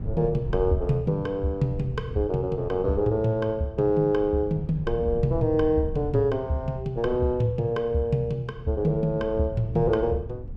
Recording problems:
rumble; below 120 Hz, SNR 13 dB

